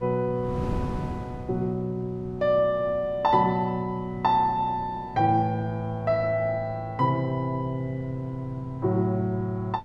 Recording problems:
wind noise; below 240 Hz, SNR 15 dB

